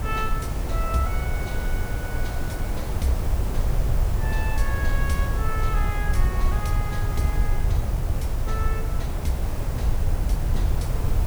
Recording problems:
hum; 50 Hz, harmonics up to 300 Hz, SNR 10 dB
background hiss; slope -7 dB per octave, SNR 3 dB
low-frequency rumble; below 80 Hz, SNR -6 dB

